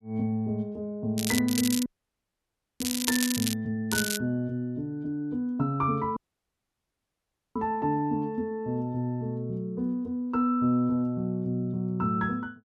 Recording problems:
crackling; at 1 s, from 1.5 to 3.5 s and at 4 s; loose cable, SNR 2 dB
audio cutting out; at 2 s for 1 s and at 6 s for 1.5 s

